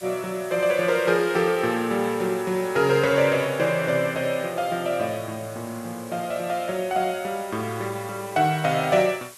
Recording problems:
hiss; slope 0 dB per octave, SNR 19 dB

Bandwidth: 12.5 kHz